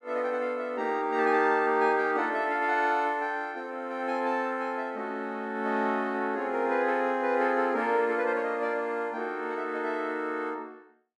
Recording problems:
none

